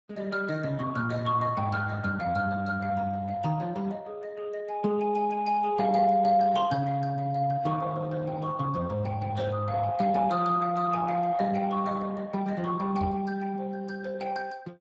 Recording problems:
lossy codec; Speex, log-spectral distance 3 dB
microphone thump; at 13 s; peak -2 dB vs average level

